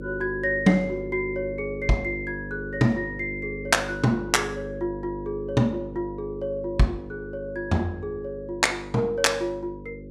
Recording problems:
hum; 50 Hz, harmonics up to 550 Hz, SNR 11 dB

